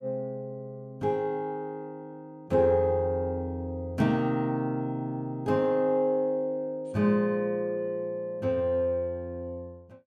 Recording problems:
none

